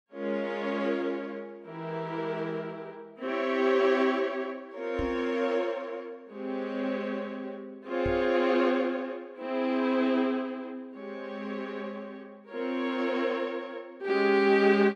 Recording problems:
microphone bump; at 5 s and at 8 s; peak -1 dB vs average level

